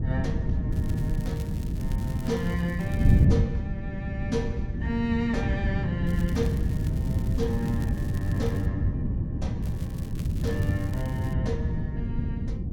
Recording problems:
wind on the microphone; below 170 Hz, SNR -4 dB
crackle; from 0.5 to 3.5 s, from 6 to 8.5 s and from 9.5 to 11 s; loose cable, SNR 17 dB

